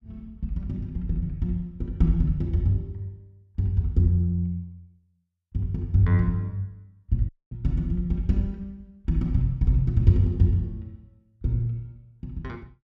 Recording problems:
audio cutting out; at 7.5 s

